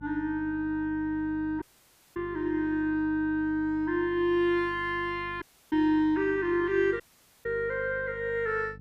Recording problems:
hum; 50 Hz, harmonics up to 550 Hz, SNR 20 dB
audio cutting out; at 1.5 s for 0.5 s, at 5.5 s and at 7 s

